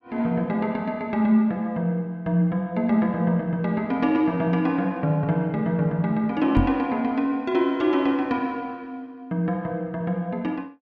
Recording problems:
microphone thump; at 6.5 s; peak +5 dB vs average level

